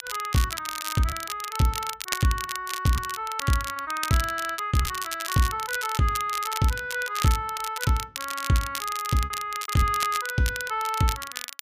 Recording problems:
crackle; vinyl, SNR 7 dB
packet loss; 4% of the sound replaced, filled with repeated pitch periods

